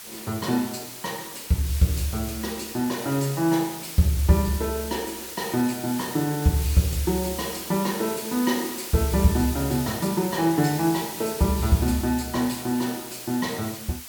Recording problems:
hiss; slope +2 dB per octave, SNR 9 dB

